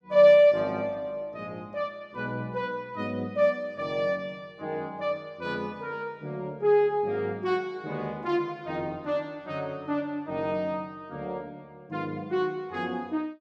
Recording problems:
none

